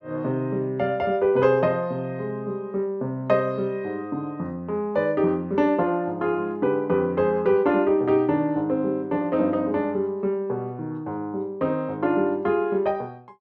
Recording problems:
none

